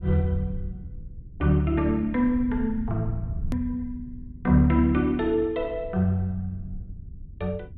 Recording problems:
treble missing; nothing above 4 kHz
rumble; below 96 Hz, SNR 14 dB
hard cut with a click; at 3.5 s

